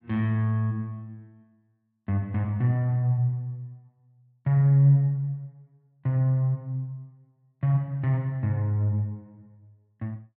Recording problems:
none

